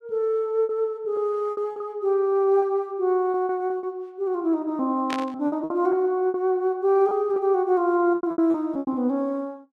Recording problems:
packet loss; 10% of the sound replaced, filled with repeated pitch periods
static burst; at 5 s; peak -3 dB vs average level

